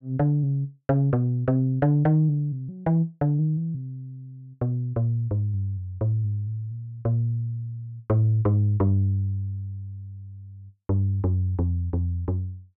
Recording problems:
none

